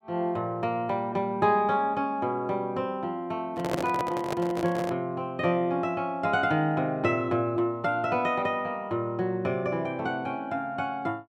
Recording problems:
handling noise; from 3.5 to 5 s; peak +2 dB vs average level

